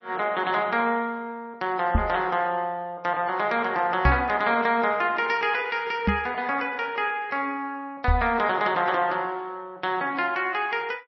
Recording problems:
codec artefacts; MP3, log-spectral distance 2 dB, nothing above 5.5 kHz
knock on the microphone; 4 times, first at 2 s; peak +6 dB vs average level

